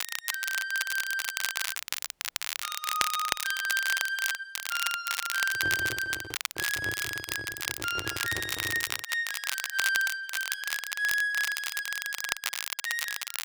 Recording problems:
crackle; vinyl, SNR 1 dB
dropout; at 2 s for 1 s and at 6.5 s
handling noise; from 5.5 to 9 s; peak -3 dB vs average level

